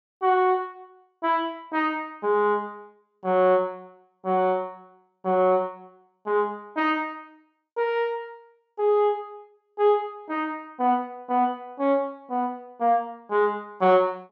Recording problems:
low-pass filter; nothing above 8 kHz

